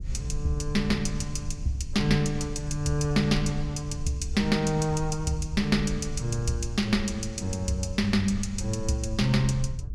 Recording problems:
rumble; below 78 Hz, SNR 10 dB

